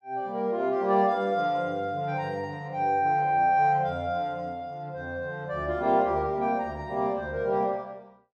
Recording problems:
none

